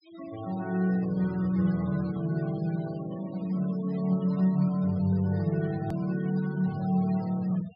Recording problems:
treble cut off; nothing above 5.5 kHz
denoising artefacts; signal-to-artefact ratio 22 dB
edit click; at 6 s

